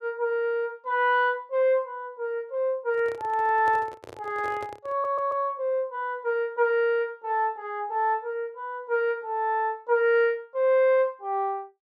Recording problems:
handling noise; from 3 to 5.5 s; peak -9 dB vs average level
stutter; at 5 s

